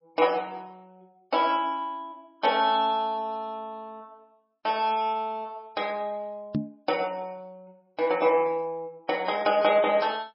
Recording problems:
lossy compression; MP3, log-spectral distance 2 dB, nothing above 5.3 kHz
knock on the microphone; at 6.5 s; peak +3 dB vs average level

